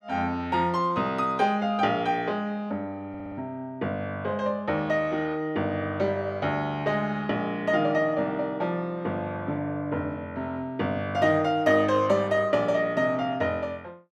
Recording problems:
audio stuttering; at 3 s

